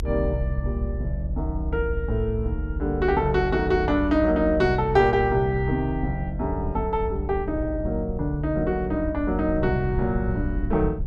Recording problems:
low-frequency rumble; below 68 Hz, SNR 6 dB

